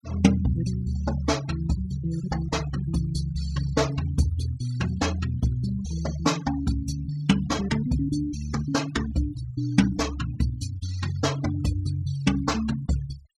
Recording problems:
noise reduction artefacts; signal-to-artefact ratio 16 dB

